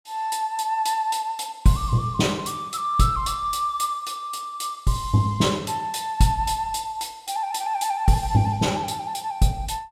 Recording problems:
none

